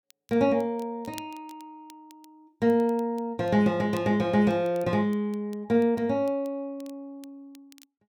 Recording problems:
crackling; vinyl, SNR 29 dB

